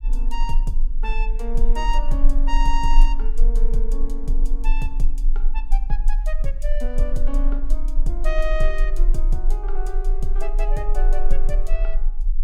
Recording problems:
rumble; below 30 Hz, strongest tone 18 Hz, SNR -7 dB

